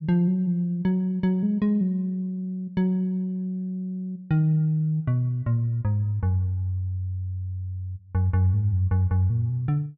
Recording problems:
none

